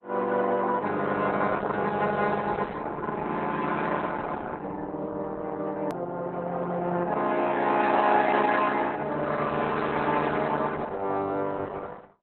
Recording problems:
codec artefacts; Opus, log-spectral distance 4 dB
hard cut with a click; at 6 s

